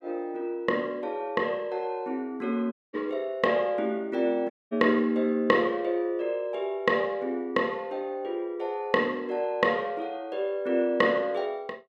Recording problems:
dropout; at 2.5 s and at 4.5 s

